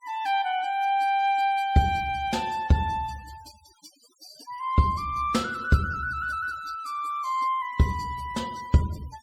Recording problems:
denoising artefacts; signal-to-artefact ratio 23 dB

